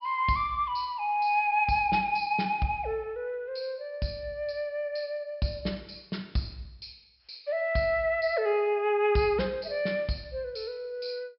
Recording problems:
treble missing; nothing above 5.4 kHz

